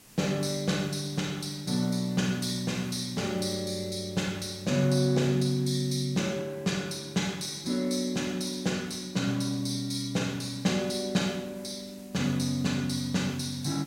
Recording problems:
background hiss; SNR 24 dB

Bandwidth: 16 kHz